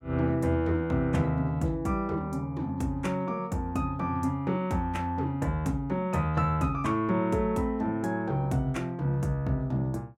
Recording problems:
none

